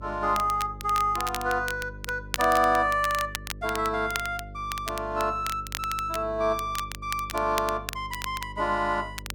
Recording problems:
hum; 50 Hz, harmonics up to 600 Hz, SNR 15 dB
crackling; vinyl, SNR 10 dB

